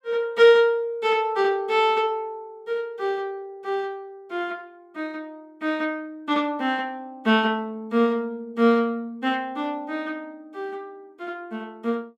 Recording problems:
none

